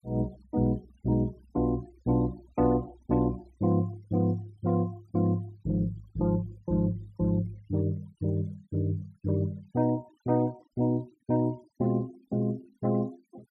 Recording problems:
noise reduction artefacts; signal-to-artefact ratio 27 dB

